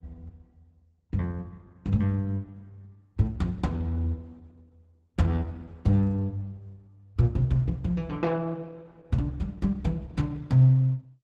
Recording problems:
codec artefacts; Opus, log-spectral distance 2 dB

